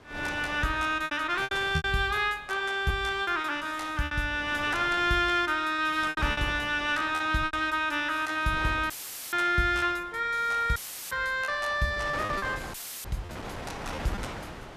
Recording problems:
wind noise; below 1.7 kHz, SNR 15 dB
packet loss; 8% of the sound replaced, filled with repeated pitch periods
dropout; at 9 s, at 11 s and at 13 s; filled with static

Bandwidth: 14.5 kHz